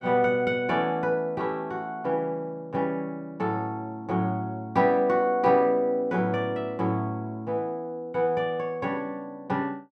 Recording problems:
none

